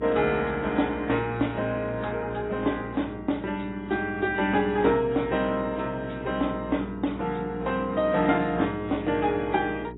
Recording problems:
codec artefacts; AAC, log-spectral distance 3 dB, nothing above 3.8 kHz
electrical hum; 60 Hz, harmonics up to 420 Hz, SNR 14 dB

